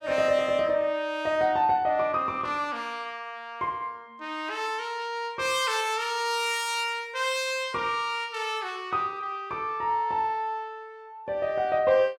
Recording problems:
none

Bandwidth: 17 kHz